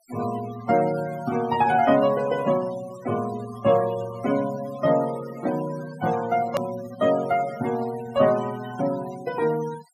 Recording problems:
noise reduction artefacts; signal-to-artefact ratio 16 dB
click at an edit; at 6.5 s

